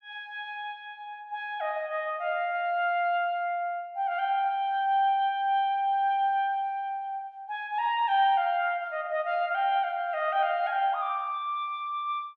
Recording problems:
none

